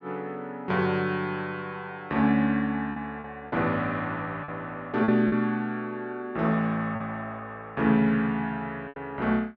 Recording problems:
lost packets; 4% of the sound replaced, filled with repeated pitch periods

